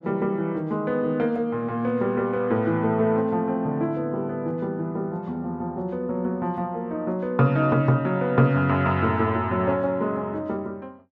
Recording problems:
none

